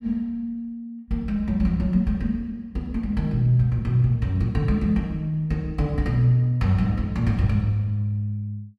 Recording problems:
none

